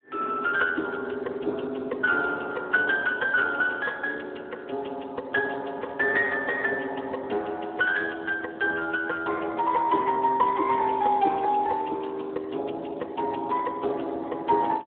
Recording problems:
phone line; 280 Hz to 2.8 kHz, Speex

